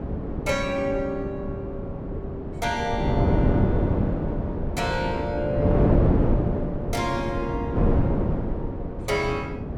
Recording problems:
wind on the microphone; below 330 Hz, SNR -3 dB

